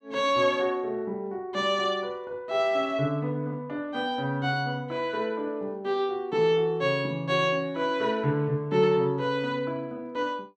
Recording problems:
none

